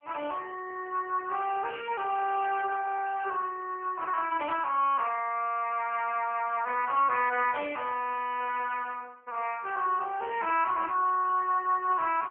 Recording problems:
phone line; 320 Hz to 3.2 kHz, AMR-NB

